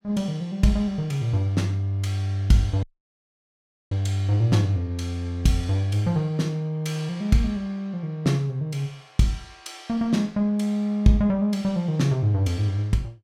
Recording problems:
dropout; at 3 s for 1 s

